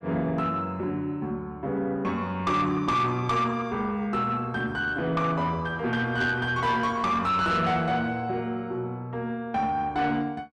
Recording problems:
distorted audio; soft clipping, signal-to-distortion ratio 10 dB

